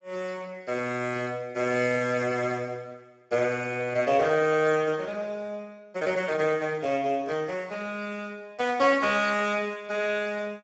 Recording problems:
lossy compression; Speex, log-spectral distance 4 dB, nothing above 7.6 kHz

